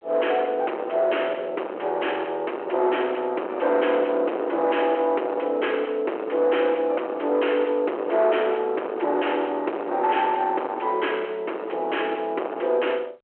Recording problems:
telephone audio; 300 Hz to 3.2 kHz, G.726
distorted audio; soft clipping, signal-to-distortion ratio 7 dB

